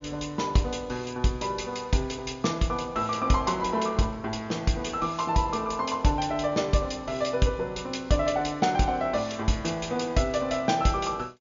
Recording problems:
low-pass filter; nothing above 7.2 kHz

